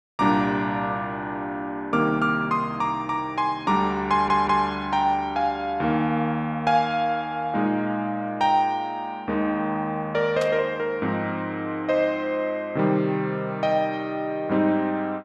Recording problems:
stutter; at 4 s
static burst; at 10 s; peak -6 dB vs average level

